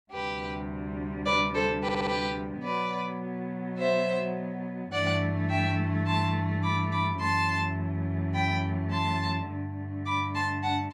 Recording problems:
audio stuttering; at 2 s

